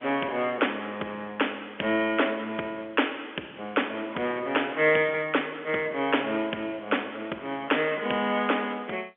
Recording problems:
phone line; 300 Hz to 3.4 kHz, G.711

